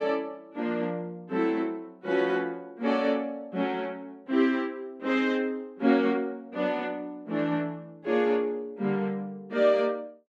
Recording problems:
none

